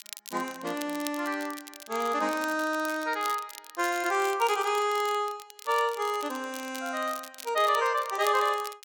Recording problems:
crackling; vinyl, SNR 15 dB

